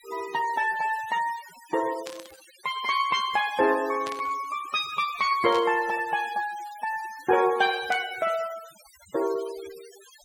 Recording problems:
denoising artefacts; signal-to-artefact ratio 17 dB
burst of static; 4 times, first at 2 s; peak -7 dB vs average level

